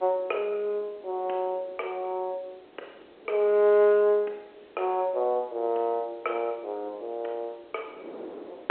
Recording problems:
phone line; 320 Hz to 3.7 kHz, G.711
wind noise; below 640 Hz, SNR 21 dB

